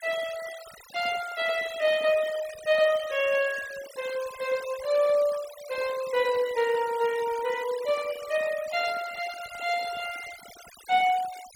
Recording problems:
denoising artefacts; signal-to-artefact ratio 16 dB

